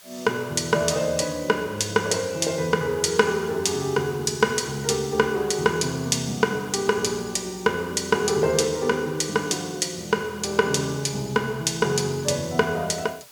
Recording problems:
hiss; slope +1 dB per octave, SNR 23 dB

